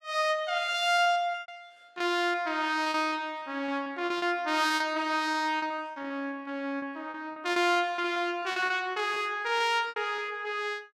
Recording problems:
packet loss; 12% of the sound replaced, filled with repeated pitch periods

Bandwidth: 16.5 kHz